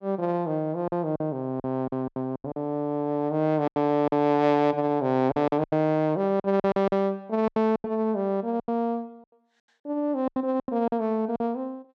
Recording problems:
packet loss; 11% of the sound replaced, filled with silence

